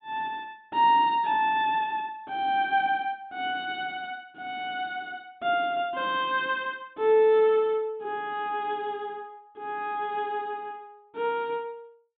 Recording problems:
treble missing; nothing above 4 kHz

